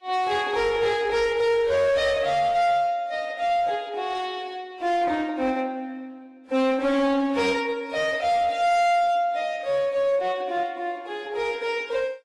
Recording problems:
lossy codec; AAC, then Vorbis, log-spectral distance 2 dB, nothing above 11.3 kHz
distorted audio; hard clipping, uneven, signal-to-distortion ratio 11 dB

